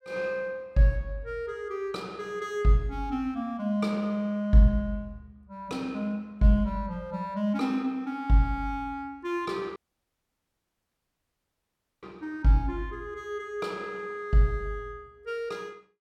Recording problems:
dropout; at 10 s for 2.5 s

